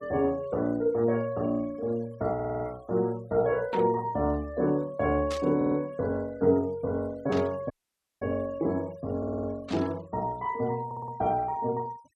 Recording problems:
denoising artefacts; signal-to-artefact ratio 25 dB
stutter; 4 times, first at 2.5 s
static burst; 4 times, first at 3.5 s; peak -6 dB vs average level
audio cutting out; at 7.5 s for 0.5 s

